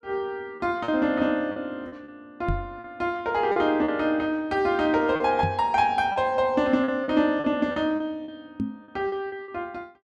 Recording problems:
lost packets; 8% of the sound replaced, filled with repeated pitch periods
knock on the microphone; at 2.5 s, at 5.5 s and at 8.5 s; peak +1 dB vs average level

